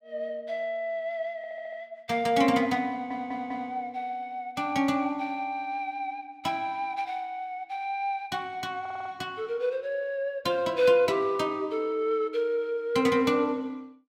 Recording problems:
audio stuttering; at 1.5 s, at 3 s and at 9 s

